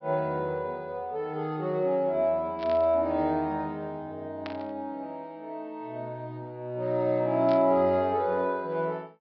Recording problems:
treble cut off; nothing above 5.5 kHz
static burst; at 2.5 s, at 4.5 s and at 7.5 s; peak -7 dB vs average level

